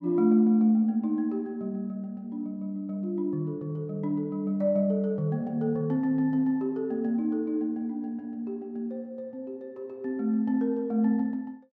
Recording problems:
none

